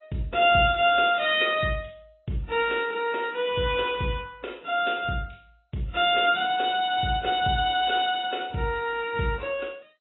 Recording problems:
codec artefacts; AAC, then MP2, log-spectral distance 4 dB, nothing above 3.8 kHz

